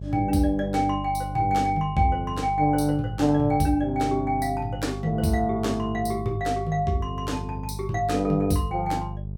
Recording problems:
electrical hum; 50 Hz, harmonics up to 450 Hz, SNR 10 dB

